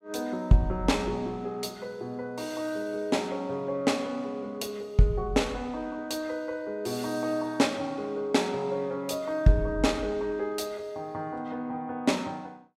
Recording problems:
none

